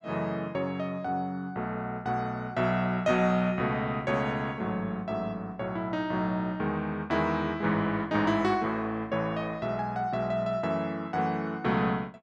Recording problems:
none

